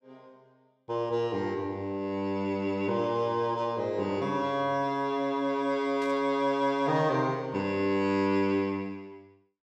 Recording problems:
static burst; at 6 s; peak -13 dB vs average level

